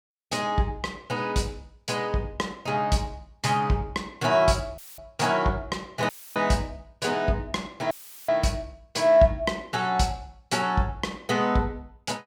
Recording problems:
audio cutting out; at 5 s, at 6 s and at 8 s; filled with static

